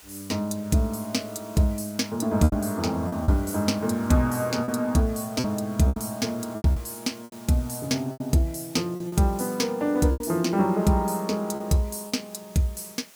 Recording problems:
hiss; slope 0 dB per octave, SNR 22 dB
packet loss; 7% of the sound replaced, filled with repeated pitch periods

